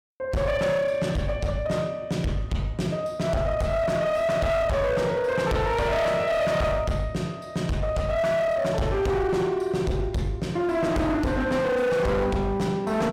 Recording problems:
distortion; hard clipping, signal-to-distortion ratio 8 dB

